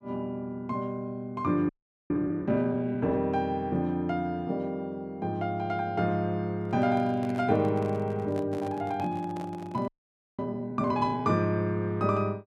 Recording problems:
frozen audio; at 1.5 s and at 10 s for 0.5 s
microphone handling noise; from 6.5 to 10 s; peak -9 dB vs average level

